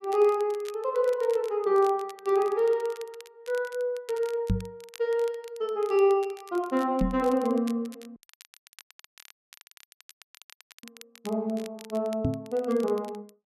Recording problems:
crackling; vinyl, SNR 23 dB
knock on the microphone; at 4.5 s, at 7 s and at 12 s; peak +5 dB vs average level
dropout; at 8 s for 2.5 s

